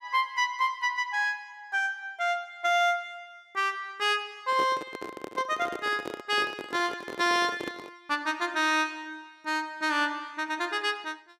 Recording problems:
handling noise; from 4.5 to 8 s; peak -4 dB vs average level

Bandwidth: 15.5 kHz